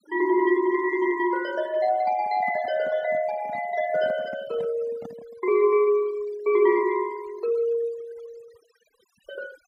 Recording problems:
denoising artefacts; signal-to-artefact ratio 23 dB
handling noise; from 2 to 5.5 s; peak -13 dB vs average level

